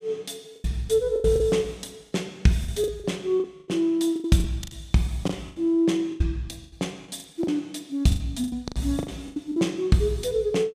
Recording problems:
lost packets; 14% of the sound replaced, filled with the last packet

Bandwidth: 15 kHz